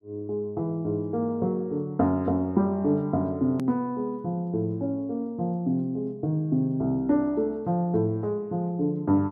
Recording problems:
edit click; at 3.5 s

